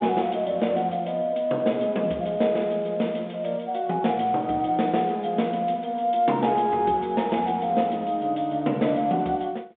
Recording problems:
phone line; 190 Hz to 3.7 kHz, G.726

